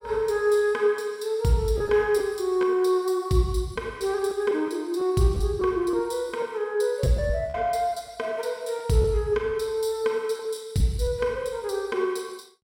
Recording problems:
packet loss; 4% of the sound replaced, filled with repeated pitch periods

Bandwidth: 16.5 kHz